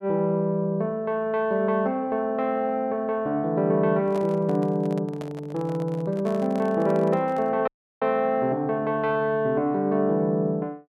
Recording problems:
handling noise; from 4 to 7.5 s; peak -9 dB vs average level
audio cutting out; at 7.5 s

